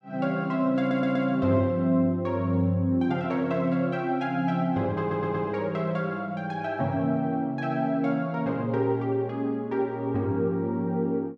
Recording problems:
stutter; at 1 s and at 5 s

